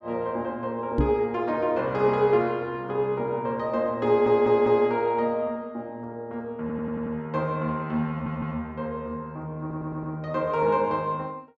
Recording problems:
knock on the microphone; at 1 s; peak +6 dB vs average level
stutter; 4 times, first at 4 s

